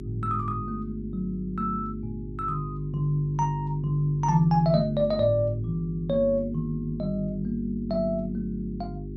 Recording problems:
electrical hum; 50 Hz, harmonics up to 400 Hz, SNR 10 dB

